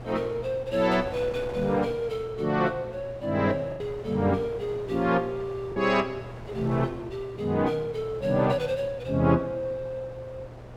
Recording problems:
hum; 60 Hz, harmonics up to 480 Hz, SNR 18 dB
wind noise; below 750 Hz, SNR 16 dB
lost packets; 1.2% of the sound replaced, filled with the last packet

